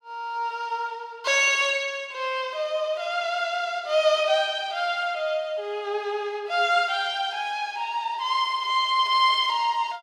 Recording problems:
none

